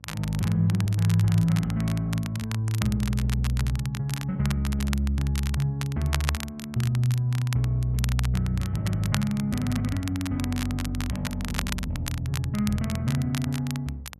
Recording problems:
hum; 50 Hz, harmonics up to 600 Hz, SNR 28 dB
crackle; vinyl, SNR 11 dB

